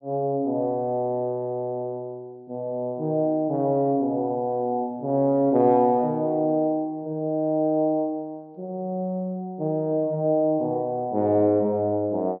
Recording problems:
treble cut off; nothing above 5.5 kHz

